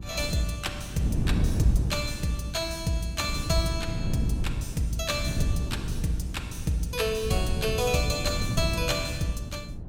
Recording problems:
hum; 60 Hz, harmonics up to 300 Hz, SNR 19 dB
wind noise; below 160 Hz, SNR 4 dB

